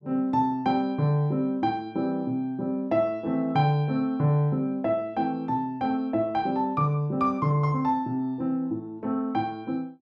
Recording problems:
none

